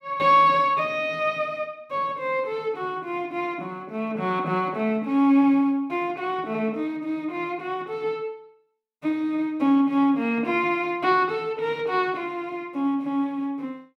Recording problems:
none

